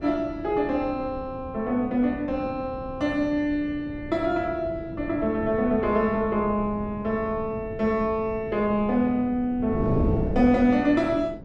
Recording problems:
wind noise; below 310 Hz, SNR 10 dB

